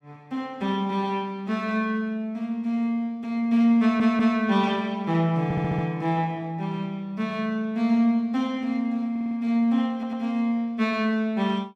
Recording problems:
audio stuttering; 4 times, first at 4 s

